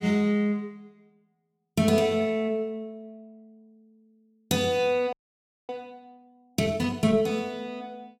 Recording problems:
frozen audio; at 5 s for 0.5 s

